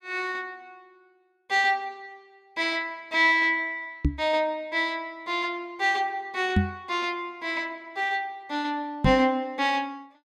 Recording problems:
microphone bump; at 4 s, at 6.5 s and at 9 s; peak +7 dB vs average level

